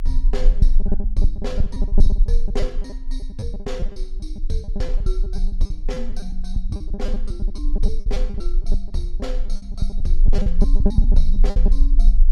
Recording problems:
rumble; below 36 Hz, strongest tone 20 Hz, SNR -9 dB
lost packets; 17% of the sound replaced, filled with repeated pitch periods

